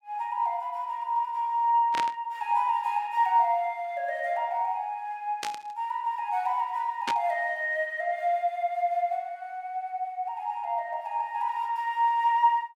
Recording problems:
burst of static; at 2 s, at 5.5 s and at 7 s; peak 0 dB vs average level

